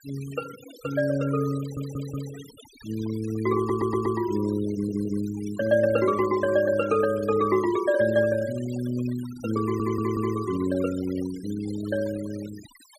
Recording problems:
noise reduction artefacts; signal-to-artefact ratio 18 dB
stutter; 4 times, first at 1.5 s

